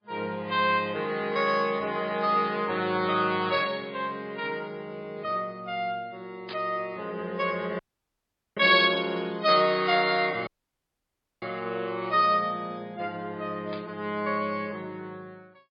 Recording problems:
lossy compression; MP3, log-spectral distance 2 dB, nothing above 4.4 kHz
static burst; 4 times, first at 3.5 s; peak -6 dB vs average level
audio cutting out; at 8 s for 1 s and at 10 s for 1 s

